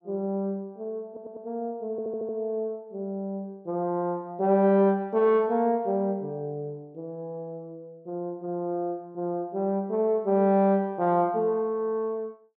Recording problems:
audio stuttering; at 1 s and at 2 s

